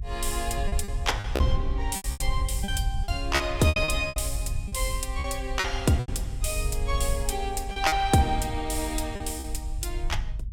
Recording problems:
low-frequency rumble; below 66 Hz, SNR 4 dB
packet loss; 10% of the sound replaced, filled with repeated pitch periods

